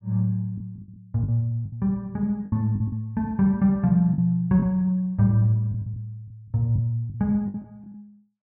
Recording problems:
lost packets; 9% of the sound replaced, filled with the last packet

